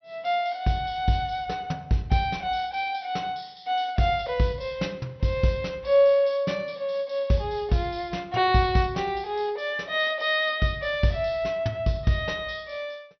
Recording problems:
low-pass filter; nothing above 6 kHz

